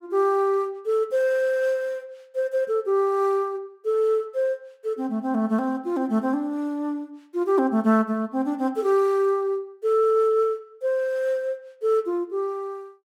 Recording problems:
none

